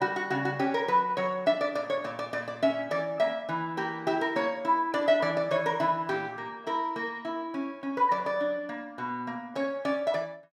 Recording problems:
none

